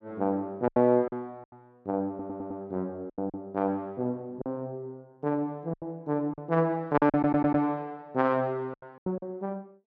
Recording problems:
lost packets; 9% of the sound replaced, filled with silence
stutter; at 2 s and at 7 s

